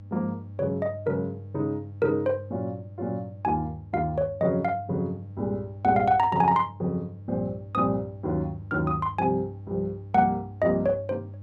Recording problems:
hum; 50 Hz, harmonics up to 500 Hz, SNR 15 dB

